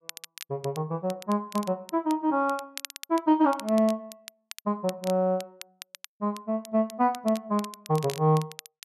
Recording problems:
crackle; vinyl, SNR 17 dB

